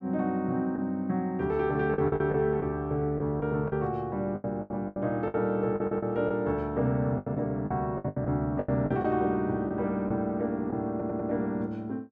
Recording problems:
packet loss; 10% of the sound replaced, filled with the last packet
audio stuttering; at 5.5 s and at 11 s

